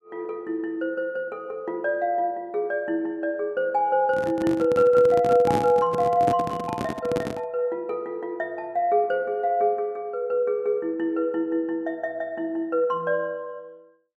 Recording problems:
microphone handling noise; from 4 to 7.5 s; peak +1 dB vs average level

